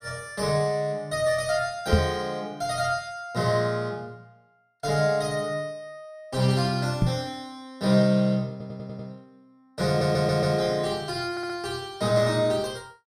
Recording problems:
knock on the microphone; at 2 s and at 7 s; peak +8 dB vs average level
audio stuttering; at 8.5 s, at 10 s and at 11 s

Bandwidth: 14.5 kHz